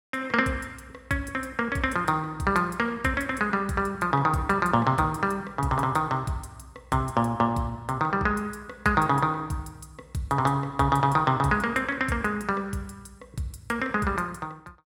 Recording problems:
none

